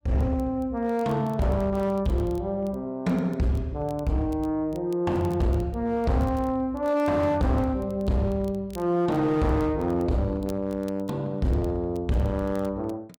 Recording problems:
distortion; hard clipping, uneven, signal-to-distortion ratio 11 dB
crackle; vinyl, SNR 30 dB

